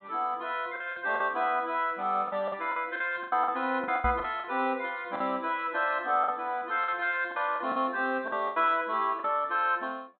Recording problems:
treble cut off; nothing above 4 kHz
lost packets; 10% of the sound replaced, filled with the last packet
microphone bump; at 4 s; peak -1 dB vs average level

